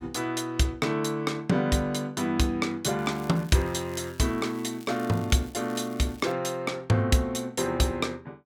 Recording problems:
crackling; from 3 to 6.5 s; loose cable, SNR 23 dB

